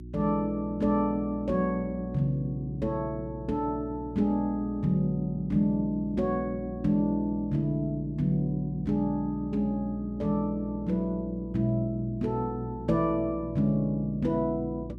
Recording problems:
hum; 60 Hz, harmonics up to 360 Hz, SNR 13 dB

